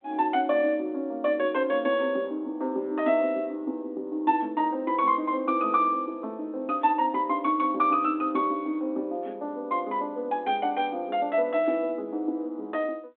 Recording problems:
telephone audio; 220 Hz to 3.6 kHz, G.726

